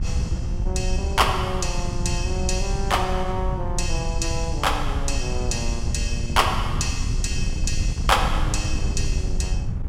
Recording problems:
wind noise; below 96 Hz, SNR 1 dB

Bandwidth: 16 kHz